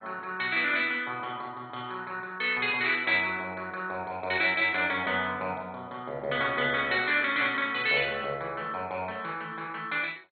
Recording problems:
lossy codec; MP2, log-spectral distance 3 dB, nothing above 4.4 kHz

